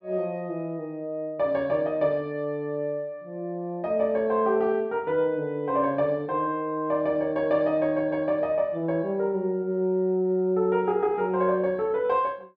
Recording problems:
none

